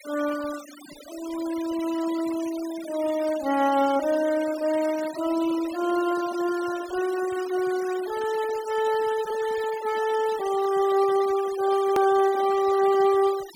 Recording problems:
noise reduction artefacts; signal-to-artefact ratio 16 dB
edit click; at 12 s

